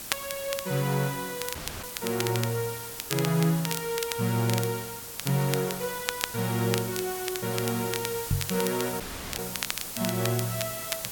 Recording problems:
hiss; slope -1 dB per octave, SNR 6 dB
crackling; vinyl, SNR 6 dB
audio cutting out; at 1.5 s and at 9 s
microphone bump; at 8.5 s; peak +6 dB vs average level

